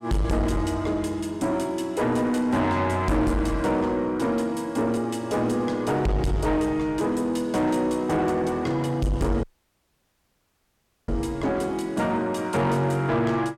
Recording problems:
distorted audio; soft clipping, signal-to-distortion ratio 8 dB
audio cutting out; at 9.5 s for 1.5 s

